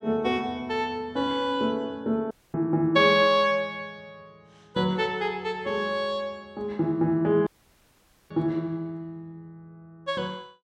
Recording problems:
dropout; at 2.5 s and at 7.5 s for 1 s

